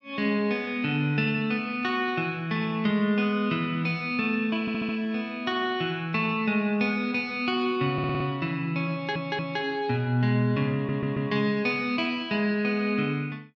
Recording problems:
audio stuttering; 4 times, first at 4.5 s

